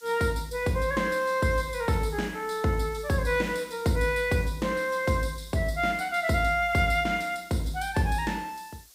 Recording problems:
background hiss; SNR 23 dB

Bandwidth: 15.5 kHz